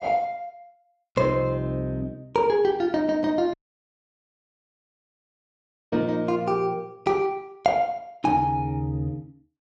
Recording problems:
audio cutting out; at 3.5 s for 2.5 s

